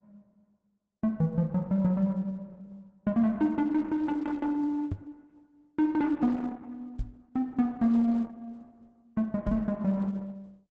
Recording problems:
lossy codec; Opus, log-spectral distance 2 dB
knock on the microphone; at 5 s, at 7 s and at 9.5 s; peak -1 dB vs average level

